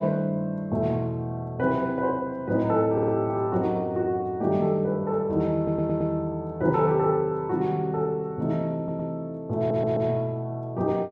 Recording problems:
stutter; 4 times, first at 3 s

